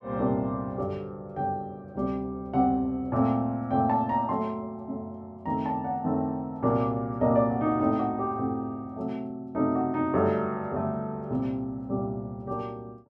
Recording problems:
none

